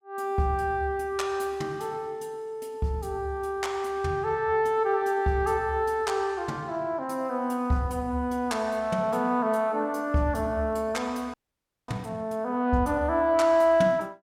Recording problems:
frozen audio; at 11 s for 0.5 s

